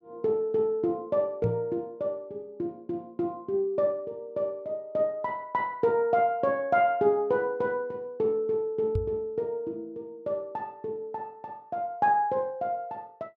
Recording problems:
microphone bump; at 1.5 s and at 9 s; peak +3 dB vs average level

